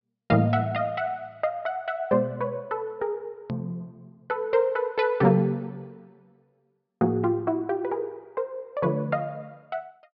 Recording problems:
treble cut off; nothing above 5.5 kHz
hard cut with a click; at 3.5 s

